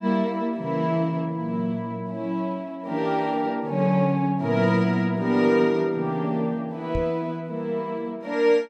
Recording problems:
microphone bump; at 7 s; peak -2 dB vs average level

